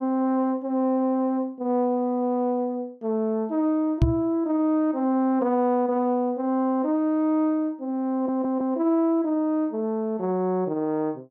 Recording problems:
microphone bump; at 4 s; peak +8 dB vs average level
stutter; at 8 s

